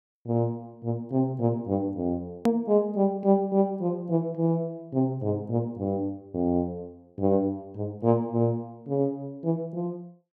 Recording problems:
hard cut with a click; at 2.5 s

